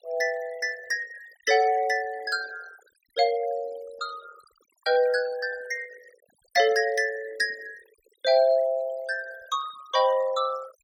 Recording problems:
denoising artefacts; signal-to-artefact ratio 20 dB

